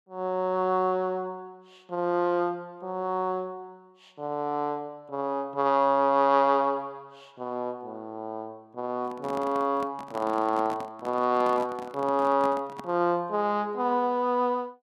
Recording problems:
handling noise; from 9 to 13 s; peak -7 dB vs average level

